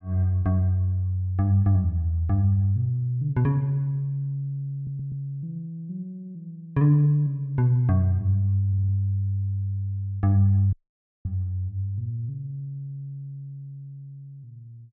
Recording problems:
audio stuttering; at 5 s and at 8.5 s
dropout; at 11 s for 0.5 s

